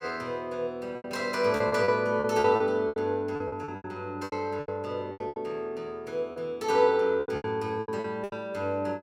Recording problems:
lost packets; 15% of the sound replaced, filled with repeated pitch periods

